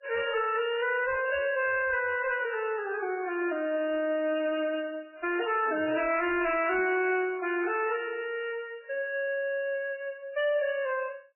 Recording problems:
lossy codec; MP3, then MP3, log-spectral distance 3 dB, nothing above 2.4 kHz
distorted audio; soft clipping, signal-to-distortion ratio 11 dB

